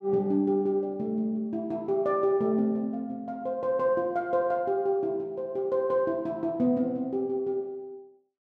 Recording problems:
none

